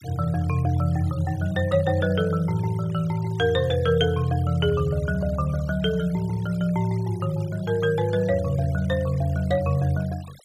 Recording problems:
denoising artefacts; signal-to-artefact ratio 22 dB

